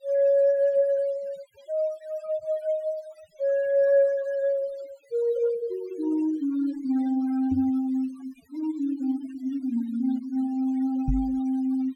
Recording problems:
noise reduction artefacts; signal-to-artefact ratio 23 dB
knock on the microphone; at 7.5 s and at 11 s; peak +2 dB vs average level

